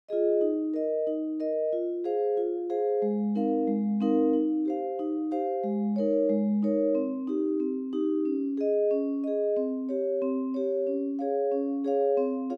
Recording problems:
none

